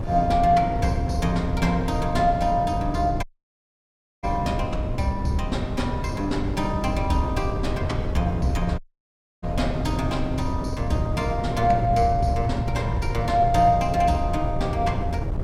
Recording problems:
wind noise; below 160 Hz, SNR 4 dB
dropout; at 3 s for 1 s and at 9 s for 0.5 s

